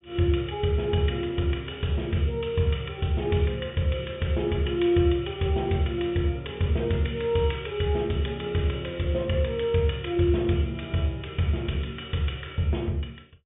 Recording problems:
treble cut off; nothing above 3.6 kHz

